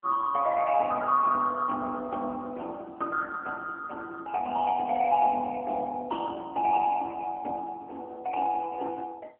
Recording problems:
telephone audio; 340 Hz to 2.2 kHz, AMR-NB

